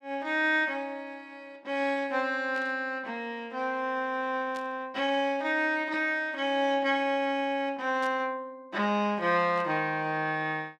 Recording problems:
static burst; 4 times, first at 2.5 s; peak -12 dB vs average level

